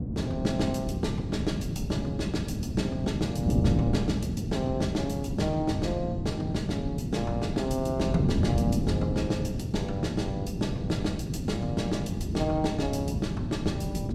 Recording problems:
wind on the microphone; below 240 Hz, SNR -1 dB

